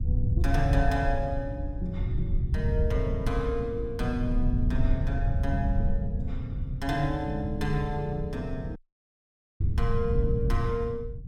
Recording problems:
rumble; below 100 Hz, SNR -1 dB
dropout; at 9 s for 1 s

